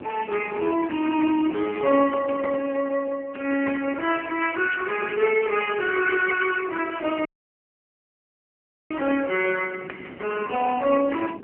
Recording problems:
telephone audio; 240 Hz to 2.9 kHz, AMR-NB
wind noise; below 420 Hz, SNR 18 dB
dropout; at 7.5 s for 1.5 s

